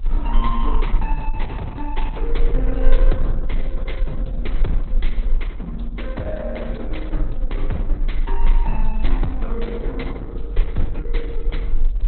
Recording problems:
lossy codec; Opus, log-spectral distance 2 dB, nothing above 4 kHz
rumble; below 36 Hz, strongest tone 20 Hz, SNR -5 dB

